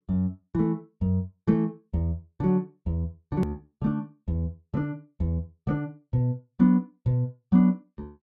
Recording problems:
edit click; at 3.5 s

